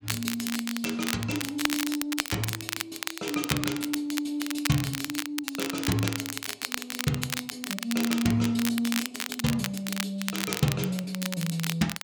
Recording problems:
crackle; vinyl, SNR 3 dB

